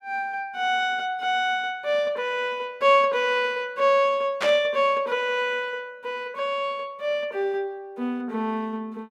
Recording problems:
static burst; at 4.5 s; peak +1 dB vs average level

